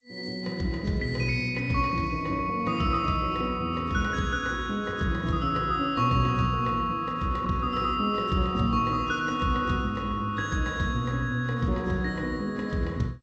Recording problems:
lossy codec; AAC, then G.722, log-spectral distance 2 dB

